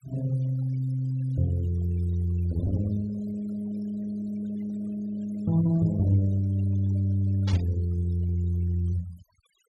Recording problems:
noise reduction artefacts; signal-to-artefact ratio 21 dB
burst of static; at 7.5 s; peak -8 dB vs average level

